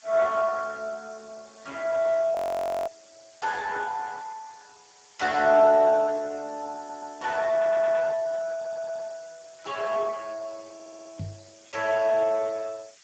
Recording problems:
codec artefacts; Speex, log-spectral distance 12 dB, nothing above 17.7 kHz
background hiss; SNR 27 dB
audio freezing; at 2.5 s for 0.5 s
audio stuttering; 4 times, first at 7 s
microphone bump; at 11 s; peak -5 dB vs average level

